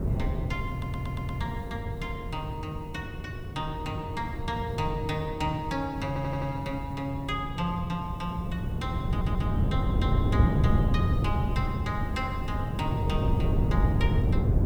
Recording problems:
background hiss; SNR 27 dB
wind noise; below 170 Hz, SNR -4 dB
audio stuttering; at 0.5 s, at 6 s and at 9 s

